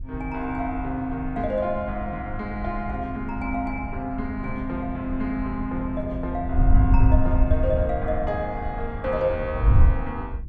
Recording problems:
wind noise; below 88 Hz, SNR 0 dB

